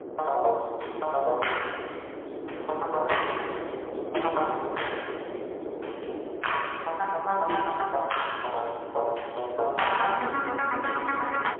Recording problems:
phone line; 300 Hz to 3.3 kHz, AMR-NB, then MP3
wind noise; below 590 Hz, SNR 9 dB

